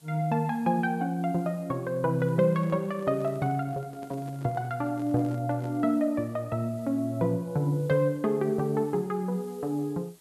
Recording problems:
background hiss; SNR 28 dB
handling noise; from 2 to 6 s; peak -12 dB vs average level

